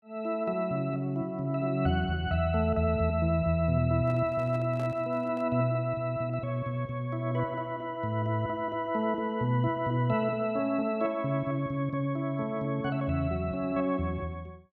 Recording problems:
microphone handling noise; from 4 to 5.5 s; peak -11 dB vs average level

